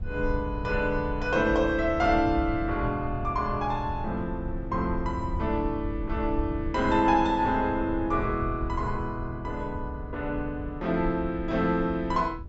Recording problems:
treble cut off; nothing above 8 kHz
low-frequency rumble; below 96 Hz, SNR 9 dB

